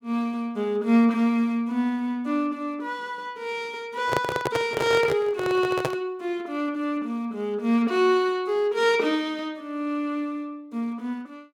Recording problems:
handling noise; from 4 to 6 s; peak +3 dB vs average level

